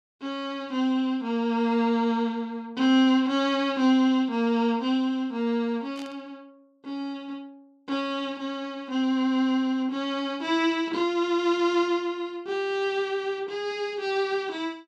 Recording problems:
burst of static; at 6 s; peak -15 dB vs average level

